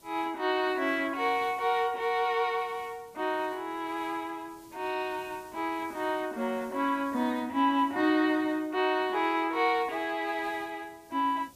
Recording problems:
background hiss; SNR 26 dB

